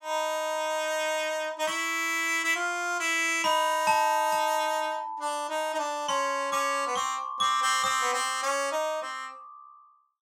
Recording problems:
none

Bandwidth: 16 kHz